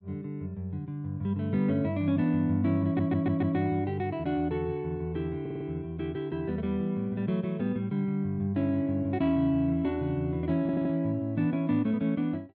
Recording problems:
audio stuttering; at 3 s, at 5.5 s and at 11 s

